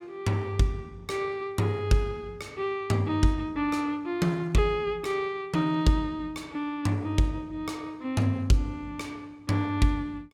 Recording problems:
none

